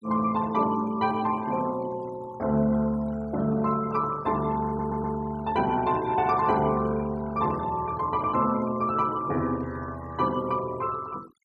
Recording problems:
denoising artefacts; signal-to-artefact ratio 20 dB
audio stuttering; at 4.5 s

